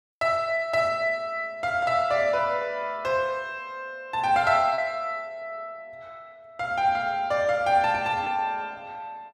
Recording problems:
lost packets; 0.7% of the sound replaced, filled with repeated pitch periods

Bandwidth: 14.5 kHz